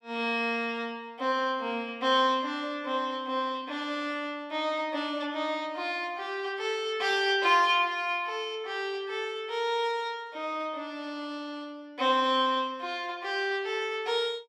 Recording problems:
burst of static; at 7 s; peak -12 dB vs average level

